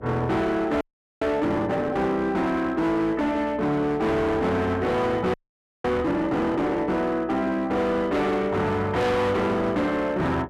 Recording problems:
distorted audio; hard clipping, signal-to-distortion ratio 8 dB
hum; 60 Hz, harmonics up to 720 Hz, SNR 22 dB
frozen audio; at 1 s and at 5.5 s for 0.5 s

